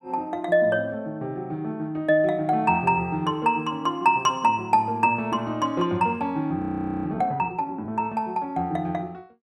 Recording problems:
audio freezing; at 6.5 s

